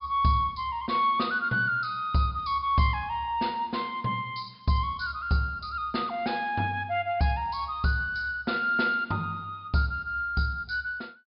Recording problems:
treble cut off; nothing above 5.5 kHz

